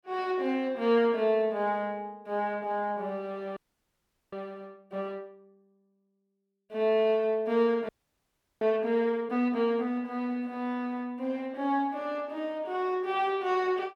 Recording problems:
audio freezing; at 3.5 s for 1 s and at 8 s for 0.5 s

